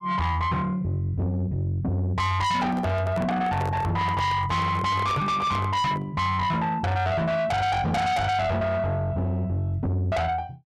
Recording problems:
distortion; soft clipping, signal-to-distortion ratio 6 dB
microphone handling noise; from 2.5 to 6 s; peak -3 dB vs average level

